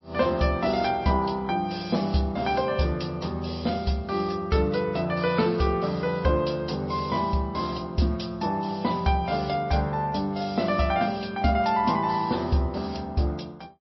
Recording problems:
lossy codec; MP3, log-spectral distance 3 dB, nothing above 5.7 kHz

